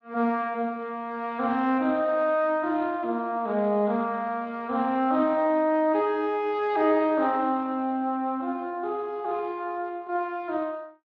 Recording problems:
lossy compression; Speex, log-spectral distance 2 dB

